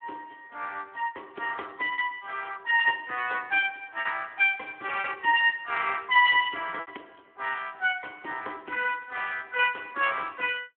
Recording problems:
telephone audio; 260 Hz to 3.3 kHz, Speex
lost packets; 2% of the sound replaced, filled with repeated pitch periods

